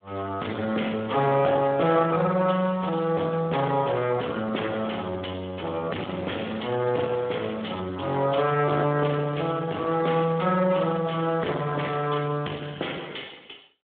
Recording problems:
telephone audio; 280 Hz to 3.5 kHz, Speex
distortion; soft clipping, signal-to-distortion ratio 12 dB

